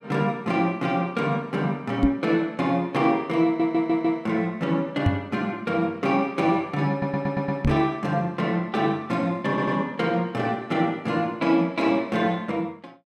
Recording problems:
knock on the microphone; at 2 s, at 5 s and at 7.5 s; peak +7 dB vs average level
audio stuttering; at 3.5 s, at 7 s and at 9.5 s

